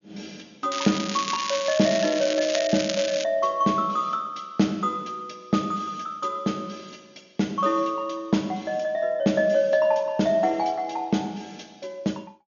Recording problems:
treble missing; nothing above 6.9 kHz
crackling; from 0.5 to 3 s; loose cable, SNR 6 dB

